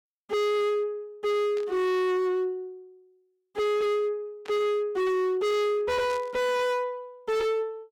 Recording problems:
distortion; hard clipping, signal-to-distortion ratio 6 dB
static burst; at 1.5 s, at 4.5 s and at 6 s; peak -12 dB vs average level

